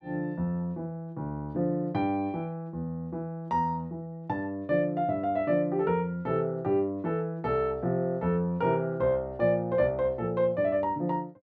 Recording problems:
none

